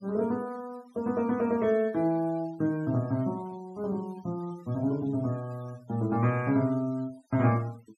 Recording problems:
denoising artefacts; signal-to-artefact ratio 24 dB

